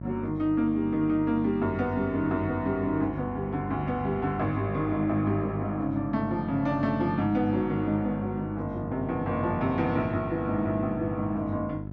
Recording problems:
electrical hum; 50 Hz, harmonics up to 700 Hz, SNR 10 dB

